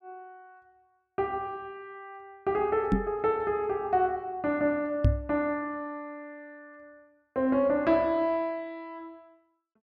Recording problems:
knock on the microphone; at 3 s and at 5 s; peak +8 dB vs average level

